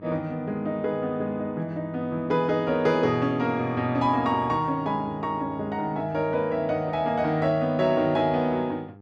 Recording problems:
hum; 50 Hz, harmonics up to 900 Hz, SNR 22 dB

